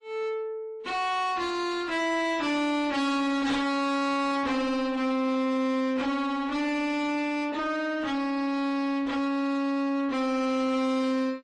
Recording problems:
codec artefacts; MP3, then AAC, log-spectral distance 2 dB, nothing above 10.1 kHz
distortion; soft clipping, signal-to-distortion ratio 6 dB

